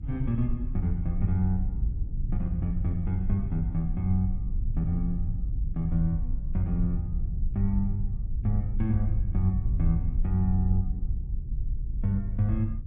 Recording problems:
rumble; below 70 Hz, strongest tone 26 Hz, SNR 2 dB

